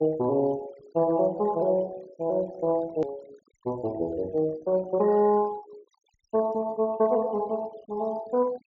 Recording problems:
treble cut off; nothing above 7.4 kHz
noise reduction artefacts; signal-to-artefact ratio 23 dB
click at an edit; at 3 s

